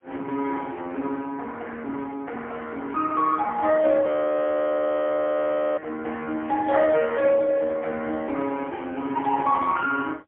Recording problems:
phone line; 280 Hz to 3.4 kHz, AMR-NB, then MP3
audio freezing; at 4 s for 1.5 s

